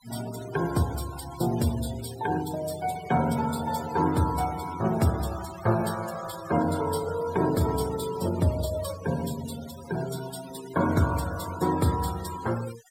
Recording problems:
denoising artefacts; signal-to-artefact ratio 13 dB

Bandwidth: 16 kHz